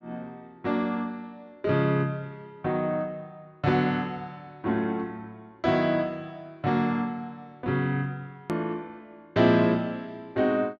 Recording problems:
treble cut off; nothing above 8 kHz
edit click; at 8.5 s

